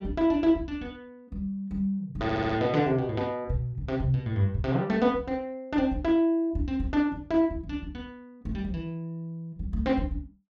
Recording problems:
audio stuttering; at 2 s

